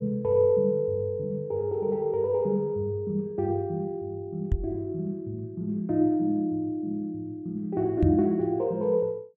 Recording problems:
microphone thump; at 4.5 s and at 8 s; peak +6 dB vs average level

